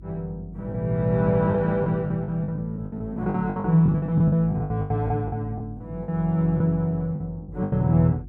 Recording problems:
electrical hum; 50 Hz, harmonics up to 350 Hz, SNR 20 dB
lost packets; 14% of the sound replaced, filled with the last packet

